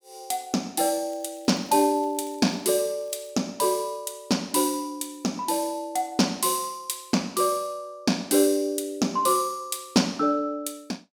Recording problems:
crackle; from 1 to 3.5 s; loose cable, SNR 28 dB

